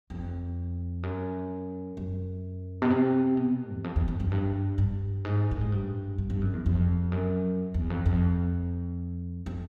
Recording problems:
none

